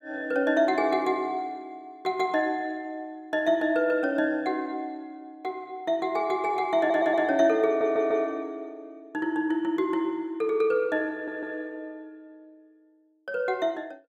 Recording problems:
audio stuttering; at 7 s, at 7.5 s and at 11 s

